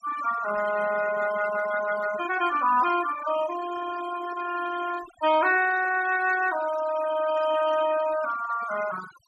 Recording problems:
denoising artefacts; signal-to-artefact ratio 12 dB

